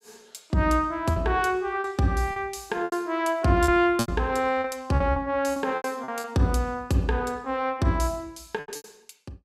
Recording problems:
lost packets; 9% of the sound replaced, filled with repeated pitch periods

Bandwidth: 15.5 kHz